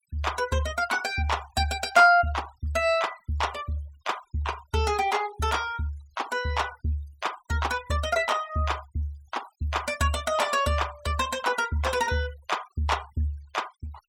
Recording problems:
noise reduction artefacts; signal-to-artefact ratio 20 dB

